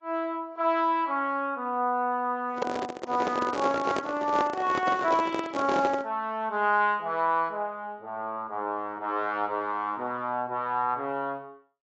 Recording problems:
codec artefacts; AAC, log-spectral distance 2 dB
handling noise; from 2.5 to 6 s; peak +3 dB vs average level

